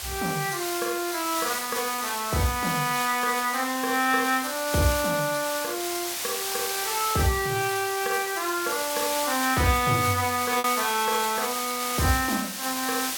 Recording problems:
background hiss; slope +1 dB per octave, SNR 4 dB
packet loss; 0.6% of the sound replaced, filled with repeated pitch periods

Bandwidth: 17 kHz